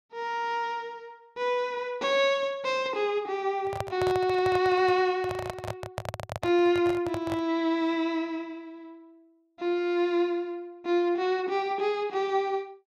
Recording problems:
handling noise; from 3.5 to 7.5 s; peak -1 dB vs average level

